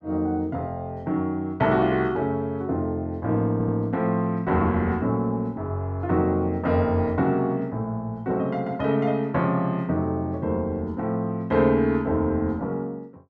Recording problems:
audio stuttering; at 3.5 s

